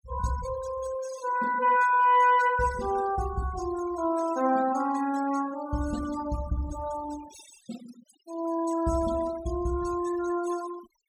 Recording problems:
denoising artefacts; signal-to-artefact ratio 15 dB

